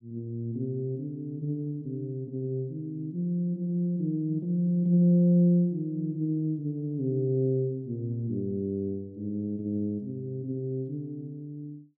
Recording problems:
none

